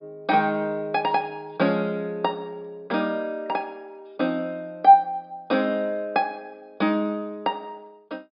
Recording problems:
low-pass filter; nothing above 5.5 kHz

